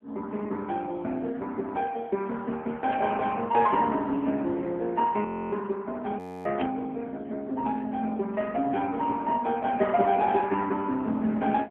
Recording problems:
telephone audio; 130 Hz to 3.2 kHz, AMR-NB
static burst; at 3 s and at 6.5 s; peak -5 dB vs average level
audio freezing; at 5.5 s and at 6 s

